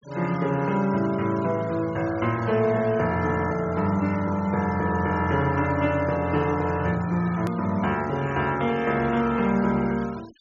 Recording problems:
treble missing; nothing above 7.1 kHz
denoising artefacts; signal-to-artefact ratio 21 dB
edit click; at 7.5 s

